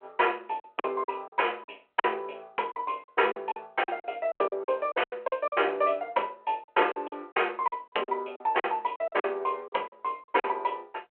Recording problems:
phone line; 320 Hz to 3.3 kHz, G.726
lost packets; 13% of the sound replaced, filled with silence

